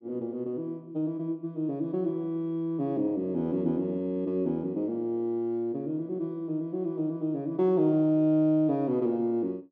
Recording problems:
none

